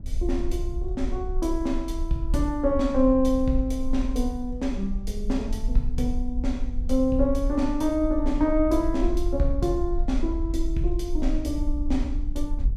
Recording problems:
wind noise; below 48 Hz, SNR 5 dB

